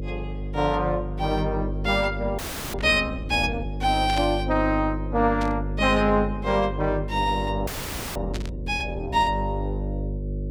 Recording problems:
mains hum; 50 Hz, harmonics up to 600 Hz, SNR 7 dB
audio freezing; at 2.5 s and at 7.5 s
burst of static; 4 times, first at 3 s; peak -5 dB vs average level

